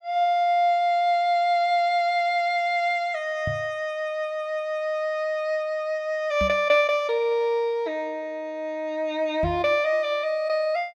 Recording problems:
microphone thump; at 3.5 s, at 6.5 s and at 9.5 s; peak -3 dB vs average level

